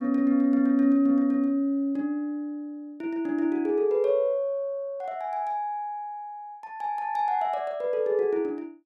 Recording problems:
none

